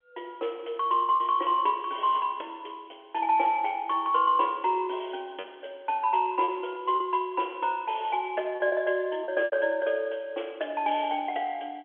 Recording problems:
phone line; 280 Hz to 3.4 kHz, G.711
packet loss; 3% of the sound replaced, filled with repeated pitch periods

